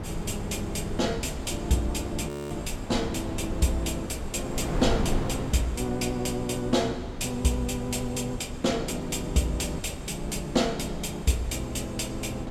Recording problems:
wind on the microphone; below 350 Hz, SNR 7 dB
frozen audio; at 2.5 s

